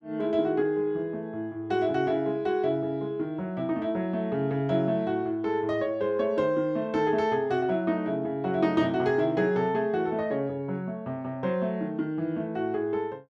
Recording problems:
none

